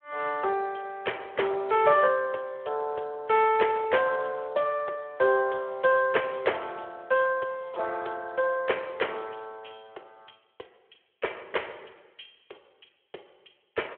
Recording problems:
telephone audio; 340 Hz to 3.2 kHz, Speex

